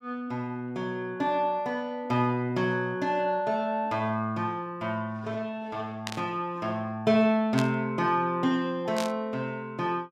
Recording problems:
static burst; at 6 s, at 7.5 s and at 9 s; peak -1 dB vs average level

